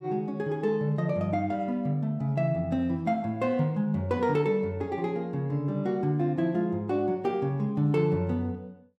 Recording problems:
none

